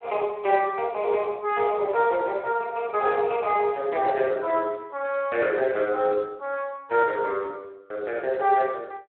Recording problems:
phone line; 340 Hz to 3.8 kHz, Speex

